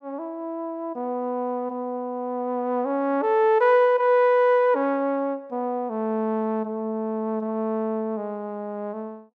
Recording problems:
none

